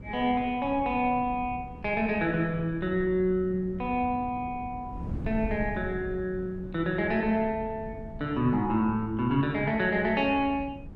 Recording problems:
wind on the microphone; below 200 Hz, SNR 13 dB

